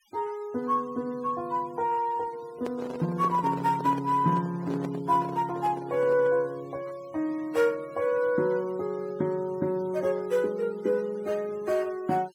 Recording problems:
noise reduction artefacts; signal-to-artefact ratio 24 dB
microphone handling noise; from 2.5 to 6.5 s; peak -4 dB vs average level

